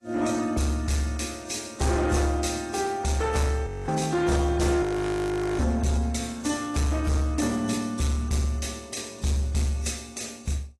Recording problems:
lossy compression; AAC, then AAC, log-spectral distance 4 dB, nothing above 12 kHz
distorted audio; soft clipping, signal-to-distortion ratio 11 dB
frozen audio; at 3.5 s and at 5 s for 1 s

